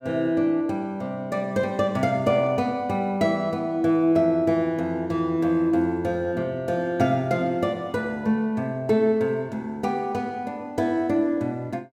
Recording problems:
none

